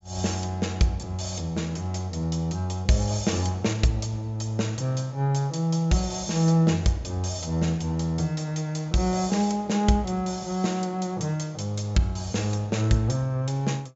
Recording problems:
low-pass filter; nothing above 8 kHz

